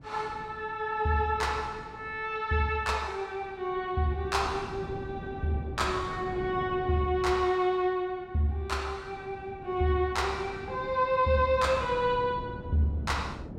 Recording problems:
wind noise; below 320 Hz, SNR 14 dB

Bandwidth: 16 kHz